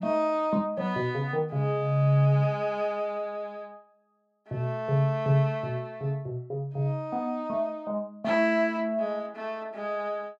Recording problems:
none

